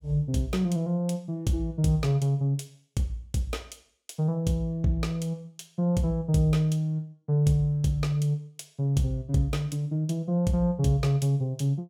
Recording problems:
none

